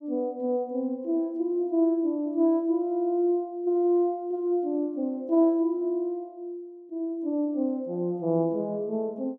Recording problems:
none

